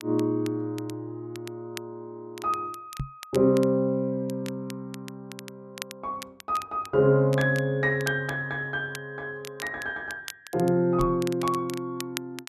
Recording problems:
crackle; vinyl, SNR 17 dB
microphone thump; at 3 s and at 11 s; peak -1 dB vs average level

